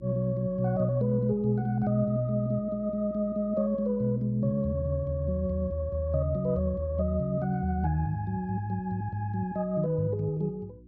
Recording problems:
electrical hum; 60 Hz, harmonics up to 360 Hz, SNR 23 dB

